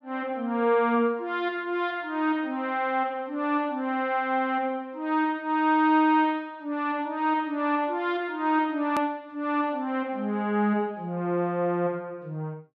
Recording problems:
click at an edit; at 9 s

